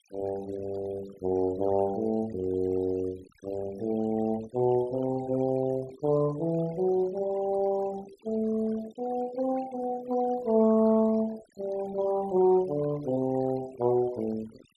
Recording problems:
noise reduction artefacts; signal-to-artefact ratio 20 dB

